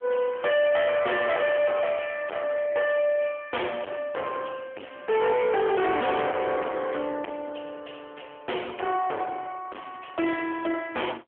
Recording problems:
phone line; 300 Hz to 3.3 kHz, AMR-NB
distorted audio; hard clipping, signal-to-distortion ratio 7 dB

